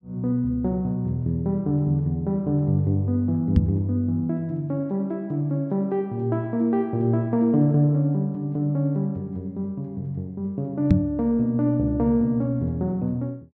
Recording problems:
microphone bump; at 3.5 s and at 11 s; peak +9 dB vs average level

